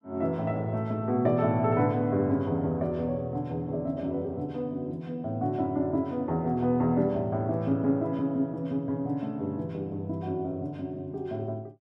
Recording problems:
none

